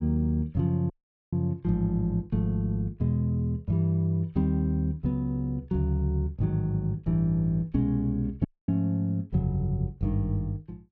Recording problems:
dropout; at 1 s and at 8.5 s

